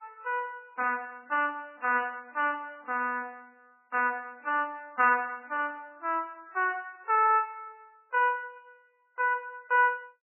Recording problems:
lossy compression; MP3, log-spectral distance 4 dB, nothing above 2.4 kHz

